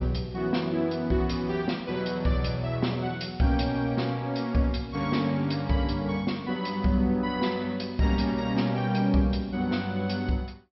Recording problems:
low-pass filter; nothing above 5.6 kHz

